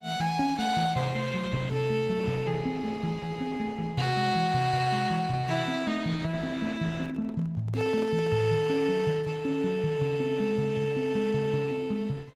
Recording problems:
lossy codec; Opus, log-spectral distance 4 dB
microphone handling noise; from 7 to 8.5 s; peak -7 dB vs average level

